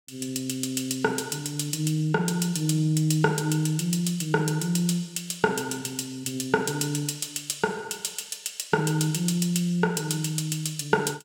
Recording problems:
none

